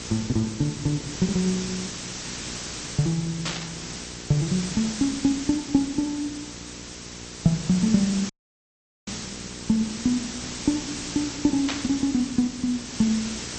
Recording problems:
lossy compression; MP2, log-spectral distance 15 dB, nothing above 13.1 kHz
mains hum; 60 Hz, harmonics up to 1.1 kHz, SNR 18 dB
background hiss; SNR 8 dB
static burst; at 3.5 s and at 12 s; peak +1 dB vs average level
dropout; at 8.5 s for 1 s

